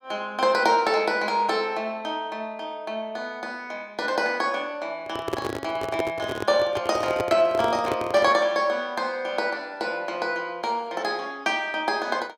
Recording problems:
microphone handling noise; from 5 to 8.5 s; peak +2 dB vs average level

